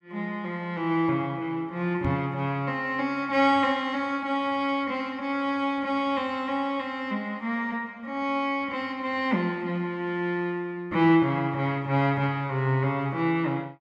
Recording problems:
microphone thump; at 2 s; peak +1 dB vs average level

